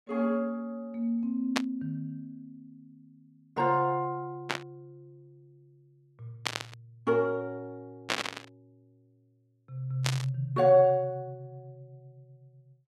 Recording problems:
static burst; 5 times, first at 1.5 s; peak +5 dB vs average level

